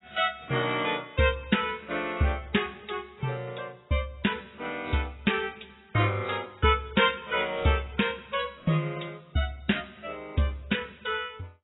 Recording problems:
codec artefacts; AAC, log-spectral distance 6 dB, nothing above 3.8 kHz

